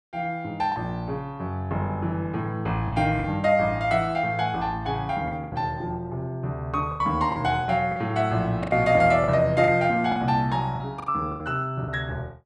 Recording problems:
packet loss; 7% of the sound replaced, filled with the last packet

